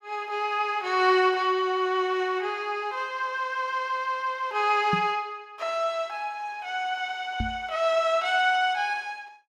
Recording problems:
knock on the microphone; at 5 s and at 7.5 s; peak +1 dB vs average level

